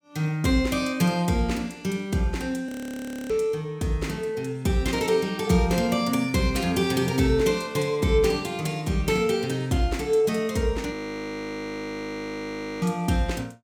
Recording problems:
frozen audio; at 2.5 s for 0.5 s and at 11 s for 2 s

